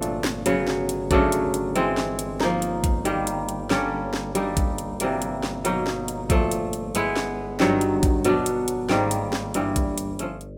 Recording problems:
hum; 50 Hz, harmonics up to 600 Hz, SNR 13 dB

